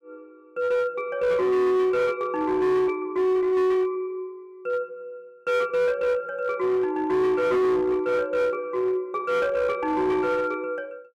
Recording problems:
distortion; hard clipping, uneven, signal-to-distortion ratio 11 dB

